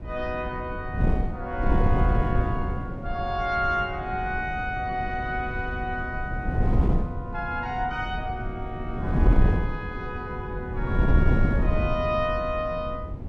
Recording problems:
wind on the microphone; below 160 Hz, SNR -2 dB

